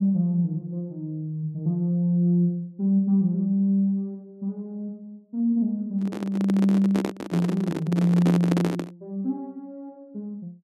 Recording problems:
handling noise; from 6 to 9 s; peak +2 dB vs average level

